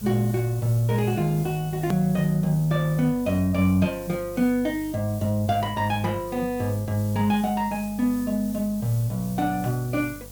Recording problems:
hum; 50 Hz, harmonics up to 750 Hz, SNR 20 dB
background hiss; SNR 18 dB
edit click; at 2 s

